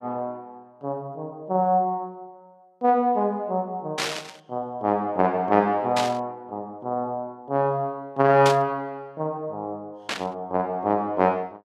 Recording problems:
static burst; 4 times, first at 4 s; peak +2 dB vs average level

